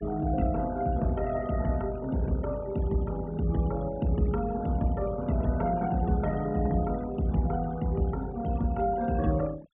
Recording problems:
low-pass filter; nothing above 3.6 kHz
denoising artefacts; signal-to-artefact ratio 20 dB

